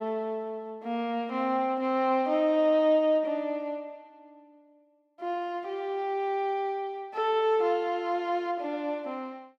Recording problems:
none

